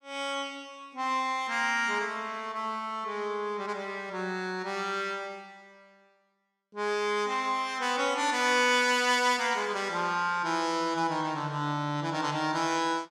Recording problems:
none

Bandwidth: 15.5 kHz